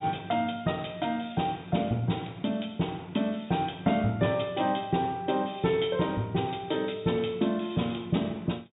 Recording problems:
treble cut off; nothing above 4 kHz

